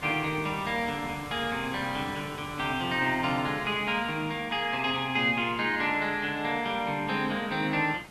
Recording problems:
background hiss; slope -4 dB per octave, SNR 17 dB

